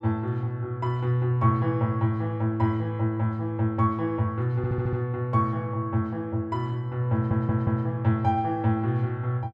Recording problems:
audio stuttering; at 4.5 s and at 7 s

